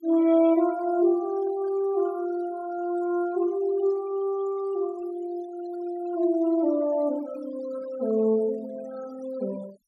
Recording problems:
noise reduction artefacts; signal-to-artefact ratio 22 dB

